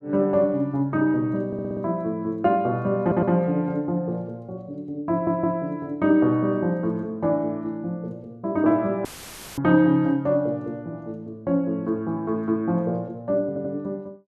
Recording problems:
stutter; 4 times, first at 1.5 s
audio cutting out; at 9 s for 0.5 s; filled with static

